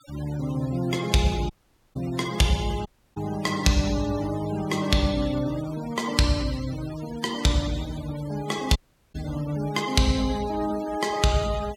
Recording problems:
noise reduction artefacts; signal-to-artefact ratio 16 dB
audio cutting out; at 1.5 s, at 3 s and at 9 s

